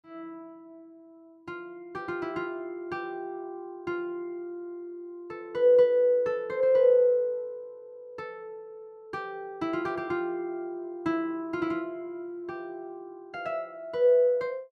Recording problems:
none

